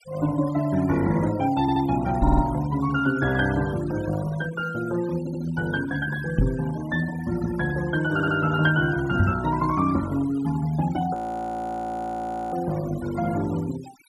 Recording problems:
denoising artefacts; signal-to-artefact ratio 15 dB
audio stuttering; 4 times, first at 1.5 s
microphone thump; at 2 s, at 6.5 s and at 9 s; peak +7 dB vs average level
audio freezing; at 11 s for 1.5 s

